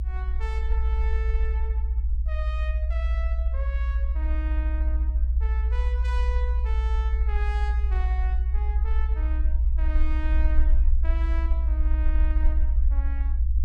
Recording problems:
low-frequency rumble; below 60 Hz, strongest tone 60 Hz, SNR -14 dB

